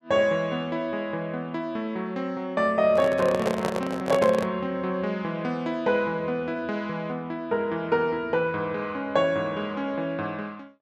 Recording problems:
handling noise; from 3 to 4.5 s; peak +4 dB vs average level

